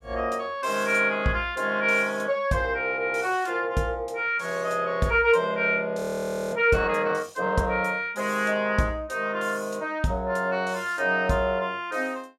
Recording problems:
audio freezing; at 6 s for 0.5 s

